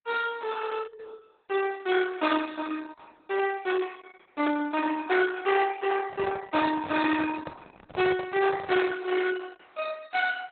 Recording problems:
lossy compression; Opus, log-spectral distance 5 dB, nothing above 4 kHz
handling noise; from 6 to 9 s; peak -2 dB vs average level

